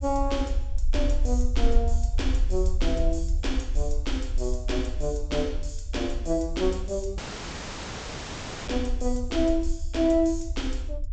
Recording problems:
treble cut off; nothing above 8 kHz
low-frequency rumble; below 56 Hz, SNR 2 dB
audio cutting out; at 7 s for 1.5 s

